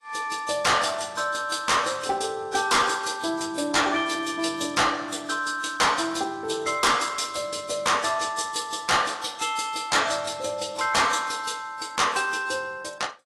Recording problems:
lossy compression; AAC, log-spectral distance 5 dB, nothing above 11.6 kHz
distortion; hard clipping, signal-to-distortion ratio 7 dB

